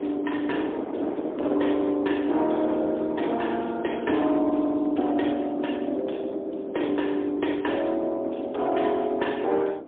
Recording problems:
telephone audio; 240 Hz to 3.5 kHz, AMR-NB, then MP3
distorted audio; hard clipping, signal-to-distortion ratio 12 dB
wind on the microphone; below 520 Hz, SNR 10 dB

